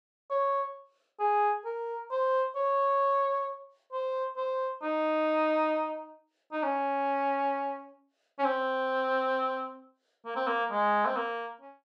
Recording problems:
none

